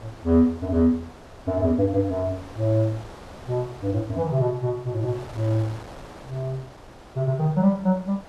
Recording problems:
wind noise; below 1.2 kHz, SNR 19 dB

